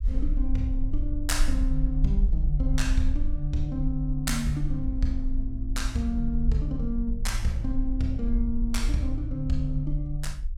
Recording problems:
rumble; below 48 Hz, SNR 1 dB

